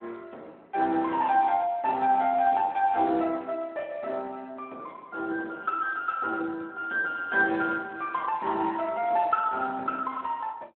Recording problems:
telephone audio; 280 Hz to 3.6 kHz, Speex

